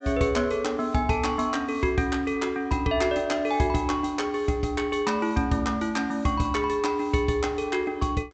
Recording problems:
treble missing; nothing above 8 kHz

